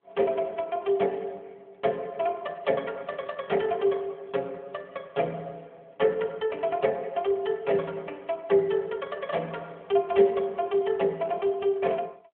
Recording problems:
phone line; 240 Hz to 3.5 kHz, AMR-NB

